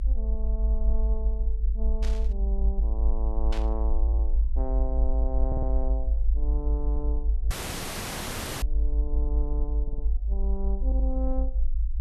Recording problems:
low-frequency rumble; below 54 Hz, strongest tone 50 Hz, SNR -10 dB
static burst; at 2 s and at 3.5 s; peak +3 dB vs average level
audio stuttering; 4 times, first at 4 s
audio cutting out; at 7.5 s for 1 s

